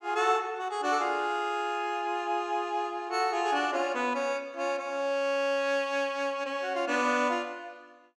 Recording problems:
none

